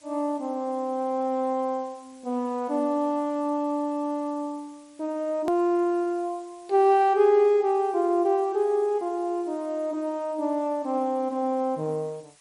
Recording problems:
lossy compression; MP3, log-spectral distance 3 dB, nothing above 13.1 kHz
background hiss; slope +2 dB per octave, SNR 29 dB
click at an edit; at 5.5 s

